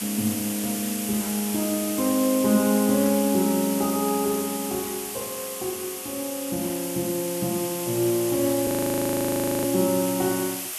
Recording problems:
hiss; slope +1 dB per octave, SNR 5 dB
audio freezing; at 8.5 s for 1 s

